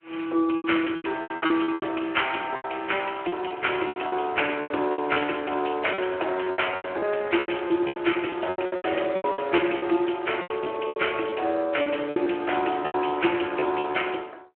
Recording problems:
telephone audio; 300 Hz to 3.2 kHz, Speex
lost packets; 16% of the sound replaced, filled with repeated pitch periods

